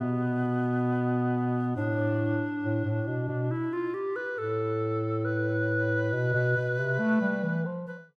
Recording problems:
none

